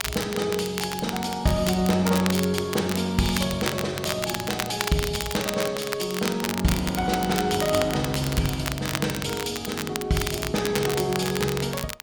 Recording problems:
wind noise; below 1.3 kHz, SNR 24 dB
crackle; vinyl, SNR 6 dB

